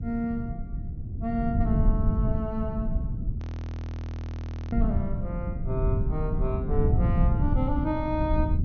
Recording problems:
treble cut off; nothing above 6.6 kHz
rumble; below 120 Hz, SNR -2 dB
audio freezing; at 3.5 s for 1.5 s

